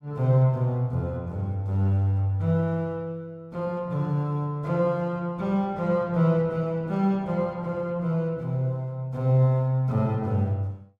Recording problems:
none

